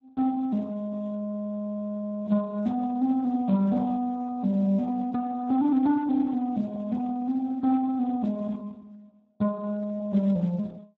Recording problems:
lossy codec; Speex, log-spectral distance 2 dB

